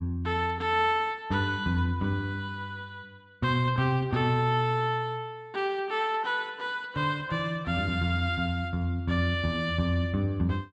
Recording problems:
none

